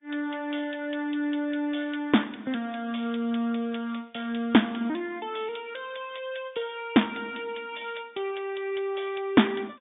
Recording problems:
treble cut off; nothing above 3.7 kHz
lossy compression; Vorbis, log-spectral distance 5 dB

